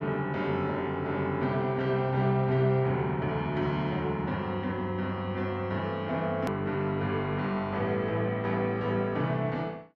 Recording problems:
edit click; at 6.5 s

